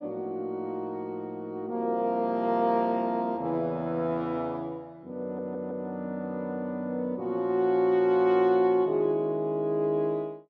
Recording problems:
audio stuttering; at 5 s

